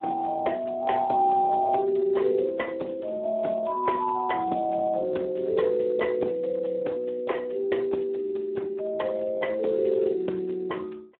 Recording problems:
phone line; 280 Hz to 3.1 kHz, Speex

